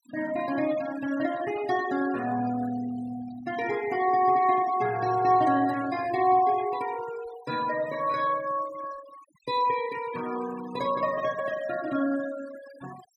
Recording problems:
denoising artefacts; signal-to-artefact ratio 17 dB

